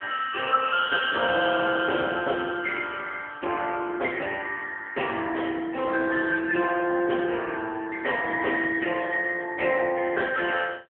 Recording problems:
phone line; 280 Hz to 2.9 kHz, AMR-NB

